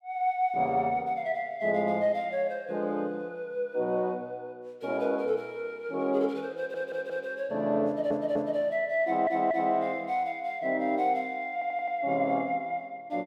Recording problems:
stutter; 4 times, first at 6.5 s

